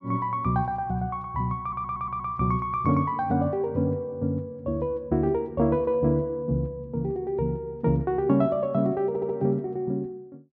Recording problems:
stutter; at 1.5 s and at 9 s

